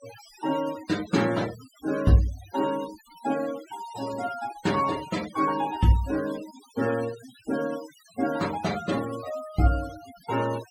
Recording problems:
denoising artefacts; signal-to-artefact ratio 15 dB

